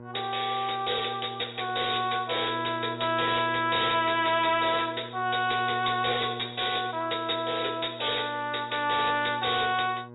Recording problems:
low-pass filter; nothing above 4 kHz
distorted audio; hard clipping, signal-to-distortion ratio 11 dB
hum; 60 Hz, harmonics up to 1.6 kHz, SNR 16 dB

